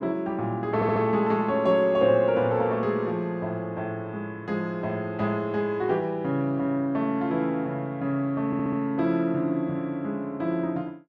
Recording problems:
stutter; at 1 s and at 8.5 s

